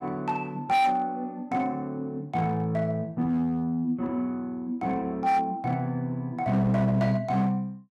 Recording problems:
distortion; hard clipping, uneven, signal-to-distortion ratio 10 dB

